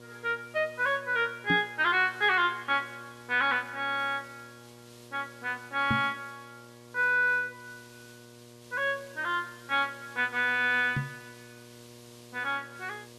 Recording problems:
electrical hum; 60 Hz, harmonics up to 1.7 kHz, SNR 23 dB
background hiss; SNR 25 dB
knock on the microphone; at 1.5 s, at 6 s and at 11 s; peak +1 dB vs average level

